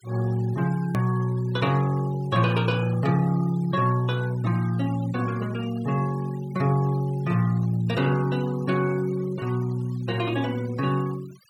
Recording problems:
denoising artefacts; signal-to-artefact ratio 20 dB
edit click; at 1 s

